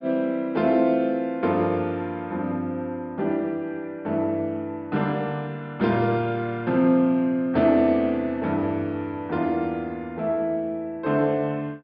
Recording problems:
treble cut off; nothing above 5.3 kHz

